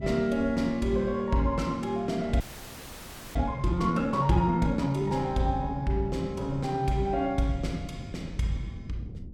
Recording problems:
wind noise; below 200 Hz, SNR 15 dB
audio freezing; at 2.5 s for 1 s

